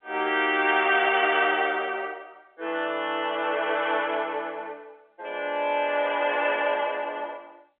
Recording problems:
telephone audio; 240 Hz to 3.5 kHz, G.711

